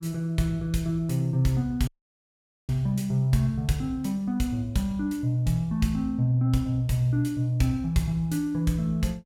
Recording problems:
dropout; at 2 s for 1 s

